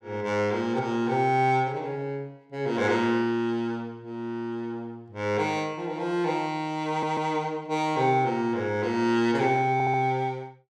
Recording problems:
stutter; at 7 s and at 9.5 s

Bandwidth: 15.5 kHz